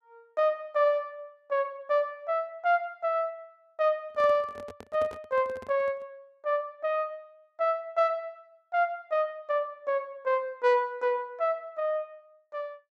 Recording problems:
handling noise; from 4 to 6 s; peak -9 dB vs average level

